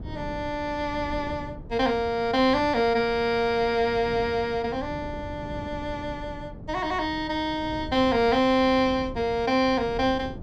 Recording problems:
wind noise; below 230 Hz, SNR 15 dB

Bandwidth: 15 kHz